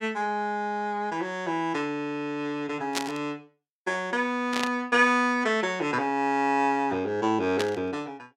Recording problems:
static burst; at 3 s, at 4.5 s and at 7.5 s; peak +3 dB vs average level

